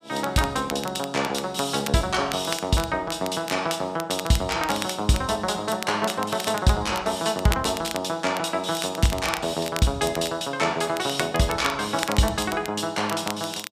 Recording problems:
crackle; vinyl, SNR 11 dB

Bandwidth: 14.5 kHz